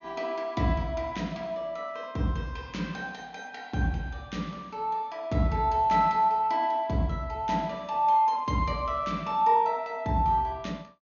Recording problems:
treble missing; nothing above 6.7 kHz

